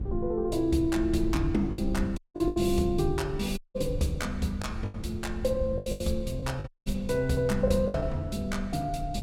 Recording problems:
rumble; below 94 Hz, SNR 9 dB
packet loss; 7% of the sound replaced, filled with the last packet
audio cutting out; at 2 s, at 3.5 s and at 6.5 s

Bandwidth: 16 kHz